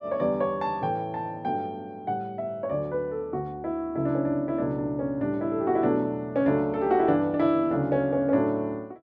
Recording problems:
none

